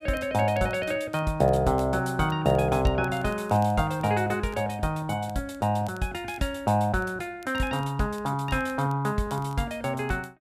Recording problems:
crackle; vinyl, SNR 29 dB

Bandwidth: 14.5 kHz